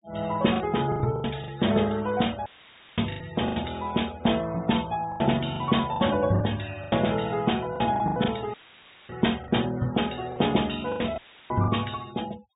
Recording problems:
low-pass filter; nothing above 3.8 kHz
denoising artefacts; signal-to-artefact ratio 20 dB
packet loss; 10% of the sound replaced, filled with the last packet
dropout; at 2.5 s for 0.5 s, at 8.5 s for 0.5 s and at 11 s; filled with static

